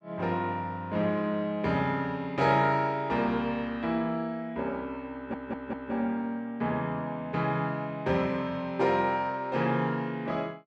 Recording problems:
stutter; at 5 s

